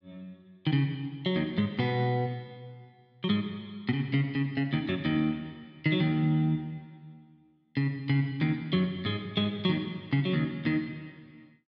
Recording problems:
none

